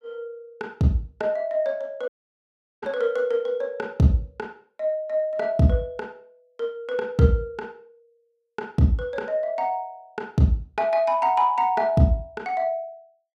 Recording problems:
audio cutting out; at 2 s for 0.5 s

